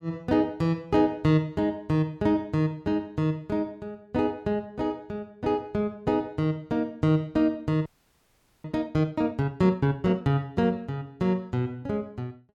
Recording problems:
audio freezing; at 8 s for 1 s

